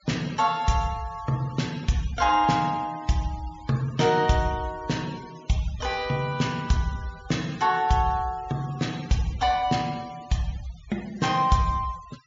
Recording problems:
treble missing; nothing above 7.3 kHz
denoising artefacts; signal-to-artefact ratio 20 dB

